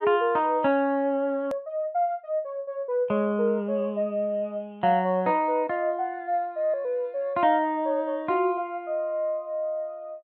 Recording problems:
edit click; at 1.5 s

